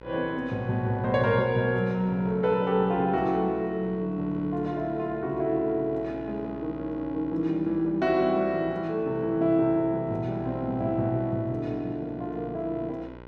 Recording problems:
mains hum; 60 Hz, harmonics up to 2 kHz, SNR 19 dB

